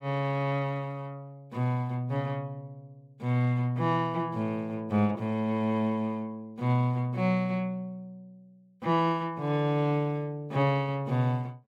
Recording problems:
none

